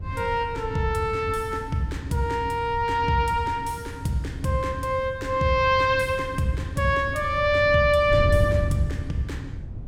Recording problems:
wind on the microphone; below 120 Hz, SNR 9 dB

